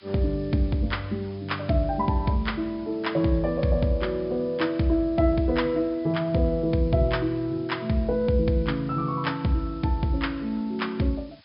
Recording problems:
low-pass filter; nothing above 5.5 kHz
hiss; SNR 29 dB

